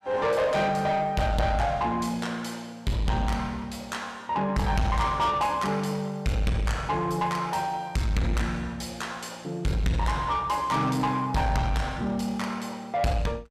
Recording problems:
distorted audio; soft clipping, signal-to-distortion ratio 8 dB

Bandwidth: 14.5 kHz